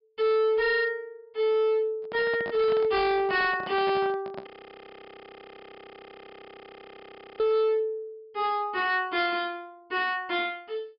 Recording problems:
low-pass filter; nothing above 5.5 kHz
distortion; hard clipping, uneven, signal-to-distortion ratio 10 dB
microphone handling noise; from 2 to 4.5 s; peak -6 dB vs average level
audio freezing; at 4.5 s for 3 s

